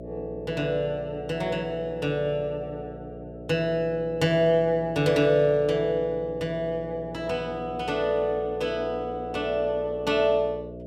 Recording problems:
electrical hum; 60 Hz, harmonics up to 660 Hz, SNR 14 dB

